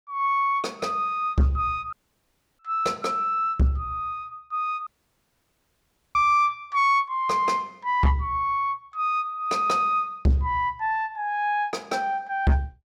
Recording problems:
distortion; soft clipping, signal-to-distortion ratio 8 dB
dropout; at 2 s for 0.5 s and at 5 s for 1.5 s

